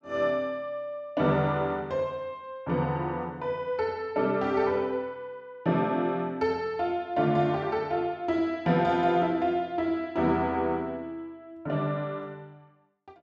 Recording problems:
none

